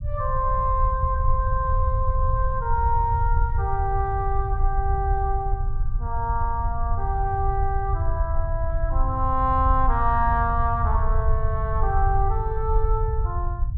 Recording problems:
low-frequency rumble; below 76 Hz, SNR 0 dB

